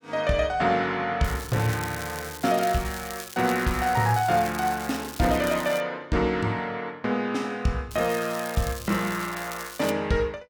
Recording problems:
crackling; from 1 to 6 s and from 8 to 10 s; loose cable, SNR 13 dB

